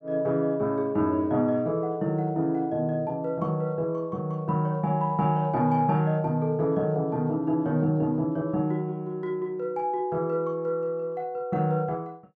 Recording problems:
none

